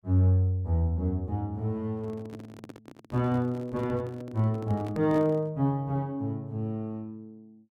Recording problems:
microphone handling noise; from 2 to 5.5 s; peak -7 dB vs average level

